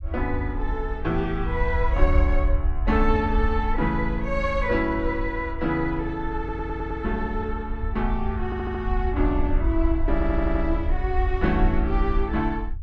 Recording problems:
low-frequency rumble; below 62 Hz, SNR 2 dB
stutter; at 6.5 s, at 8.5 s and at 10 s

